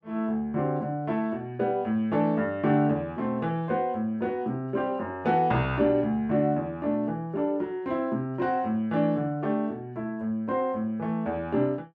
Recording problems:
none

